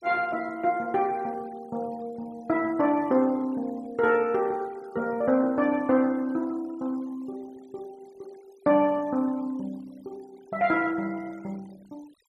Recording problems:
denoising artefacts; signal-to-artefact ratio 27 dB

